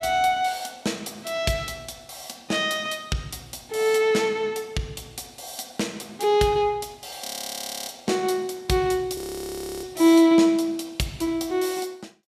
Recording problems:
frozen audio; at 7.5 s for 0.5 s and at 9 s for 0.5 s

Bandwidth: 14.5 kHz